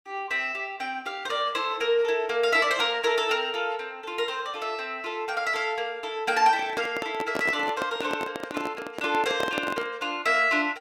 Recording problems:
handling noise; from 6.5 to 10 s; peak 0 dB vs average level

